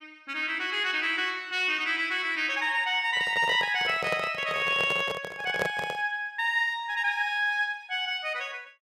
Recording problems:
handling noise; from 3 to 6 s; peak +1 dB vs average level

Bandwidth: 14.5 kHz